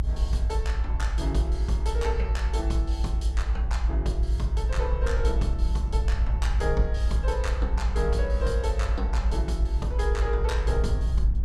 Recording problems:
rumble; below 60 Hz, strongest tone 58 Hz, SNR -6 dB

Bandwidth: 14.5 kHz